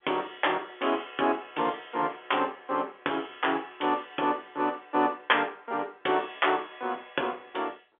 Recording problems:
phone line; 260 Hz to 3.5 kHz, G.711

